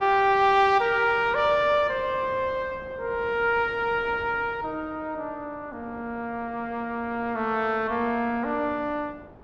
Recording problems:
wind on the microphone; below 710 Hz, SNR 20 dB

